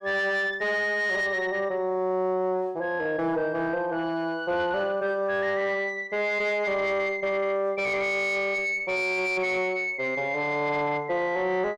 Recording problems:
distortion; soft clipping, signal-to-distortion ratio 11 dB

